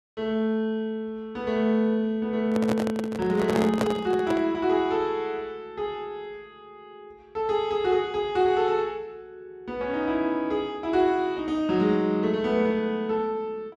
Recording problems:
handling noise; from 2.5 to 4.5 s; peak +2 dB vs average level

